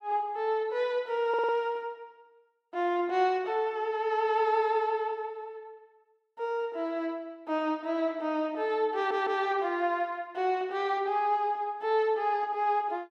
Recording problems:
stutter; at 1.5 s and at 9 s

